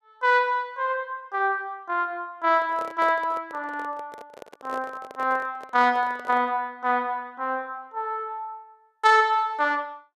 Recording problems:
microphone handling noise; from 2.5 to 6.5 s; peak -8 dB vs average level

